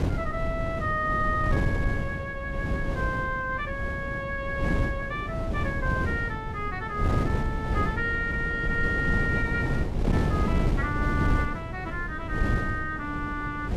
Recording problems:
wind noise; below 230 Hz, SNR 0 dB

